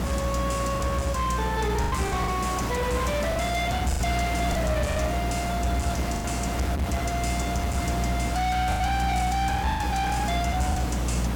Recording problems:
distorted audio; hard clipping, signal-to-distortion ratio 7 dB
electrical hum; 60 Hz, harmonics up to 360 Hz, SNR 3 dB
background hiss; slope -5 dB per octave, SNR 5 dB
lost packets; 6% of the sound replaced, filled with the last packet

